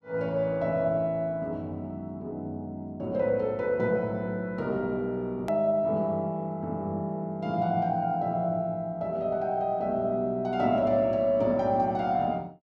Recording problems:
click at an edit; at 5.5 s

